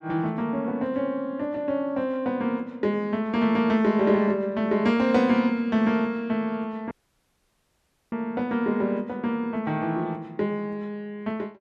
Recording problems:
audio cutting out; at 7 s for 1 s

